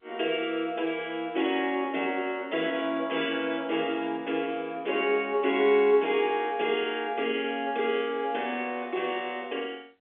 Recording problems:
telephone audio; 280 Hz to 3.5 kHz, G.711

